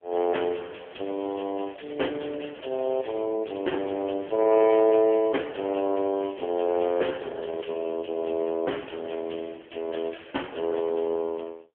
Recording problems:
phone line; 260 Hz to 3.3 kHz, AMR-NB

